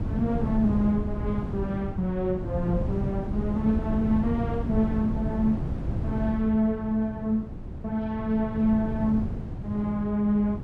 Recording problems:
wind noise; below 200 Hz, SNR 5 dB

